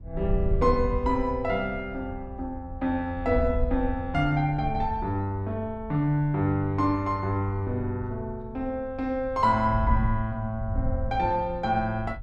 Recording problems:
wind on the microphone; below 82 Hz, SNR 8 dB

